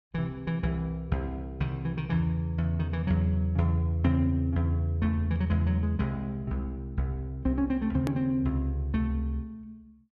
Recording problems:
click at an edit; at 8 s

